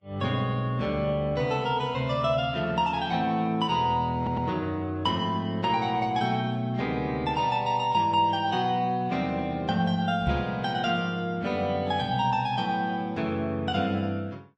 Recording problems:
lossy compression; Vorbis, log-spectral distance 2 dB
stutter; at 4 s
microphone bump; at 10 s; peak +2 dB vs average level

